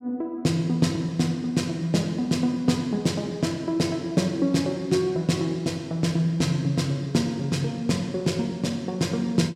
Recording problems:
none

